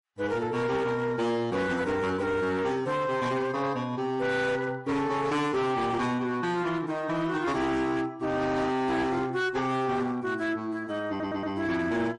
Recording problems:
codec artefacts; MP3, then MP3, log-spectral distance 2 dB, nothing above 10.4 kHz
distortion; hard clipping, signal-to-distortion ratio 11 dB
audio stuttering; at 11 s

